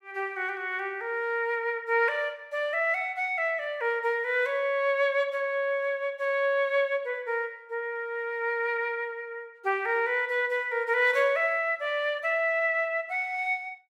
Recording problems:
none

